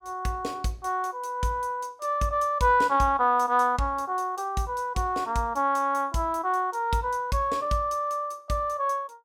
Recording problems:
none

